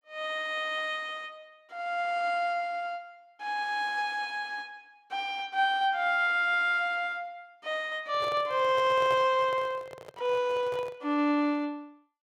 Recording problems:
handling noise; from 8 to 11 s; peak -6 dB vs average level

